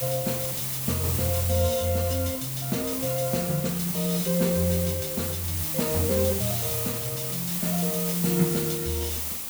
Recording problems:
mains hum; 50 Hz, harmonics up to 600 Hz, SNR 26 dB
hiss; slope -1 dB per octave, SNR 1 dB

